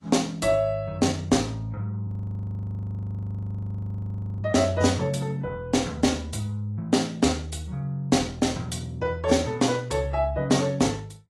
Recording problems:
lossy compression; AAC, log-spectral distance 3 dB, nothing above 11.6 kHz
frozen audio; at 2 s for 2.5 s

